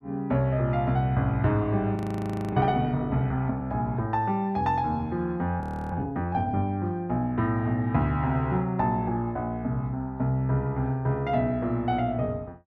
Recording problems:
audio freezing; at 2 s for 0.5 s and at 5.5 s

